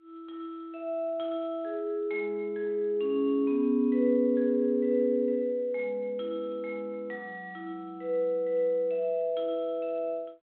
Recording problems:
telephone audio; 220 Hz to 3.9 kHz, G.726

